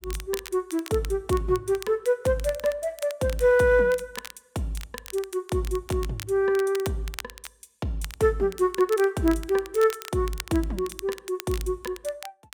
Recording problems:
crackling; vinyl, SNR 16 dB

